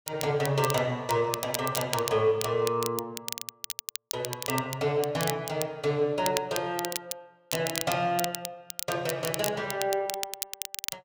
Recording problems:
crackling; vinyl, SNR 6 dB

